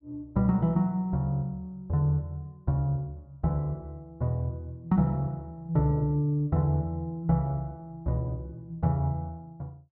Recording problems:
none

